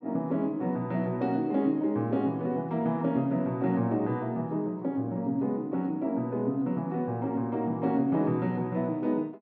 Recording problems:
none

